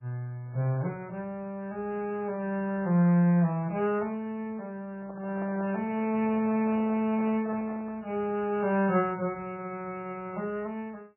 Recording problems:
lossy compression; MP3, log-spectral distance 2 dB, nothing above 2.4 kHz
microphone handling noise; from 5 to 8 s; peak -9 dB vs average level

